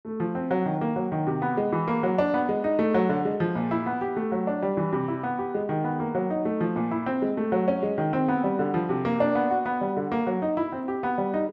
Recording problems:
none

